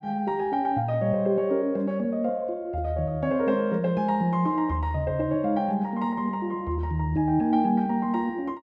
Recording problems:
none

